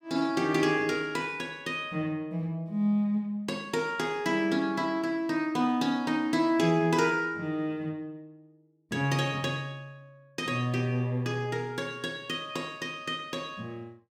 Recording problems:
none

